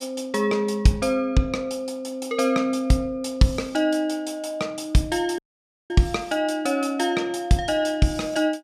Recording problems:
audio cutting out; at 5.5 s for 0.5 s

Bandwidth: 14 kHz